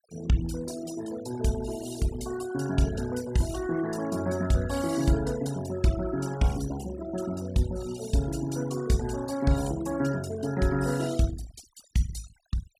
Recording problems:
denoising artefacts; signal-to-artefact ratio 15 dB

